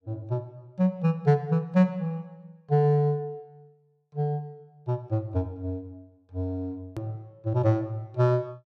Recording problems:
click at an edit; at 7 s

